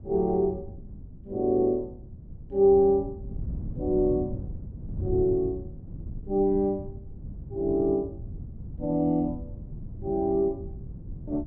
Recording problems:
wind noise; below 150 Hz, SNR 13 dB

